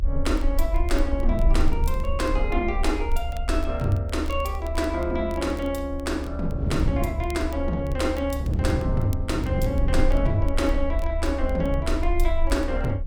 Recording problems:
low-frequency rumble; below 70 Hz, SNR 2 dB
wind noise; below 180 Hz, SNR 3 dB
crackling; vinyl, SNR 24 dB

